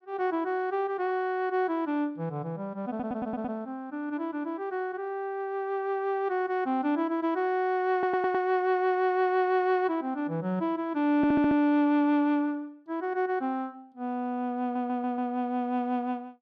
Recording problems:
audio stuttering; 4 times, first at 3 s

